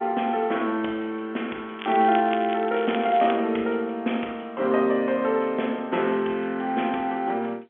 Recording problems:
phone line; 190 Hz to 3.7 kHz, G.711
crackle; from 2 to 3.5 s; loose cable, SNR 14 dB

